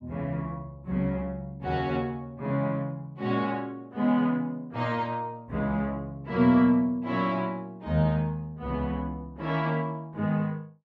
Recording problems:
none

